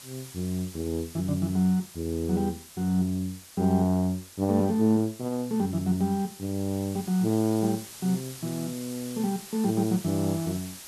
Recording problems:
background hiss; slope +1 dB per octave, SNR 16 dB

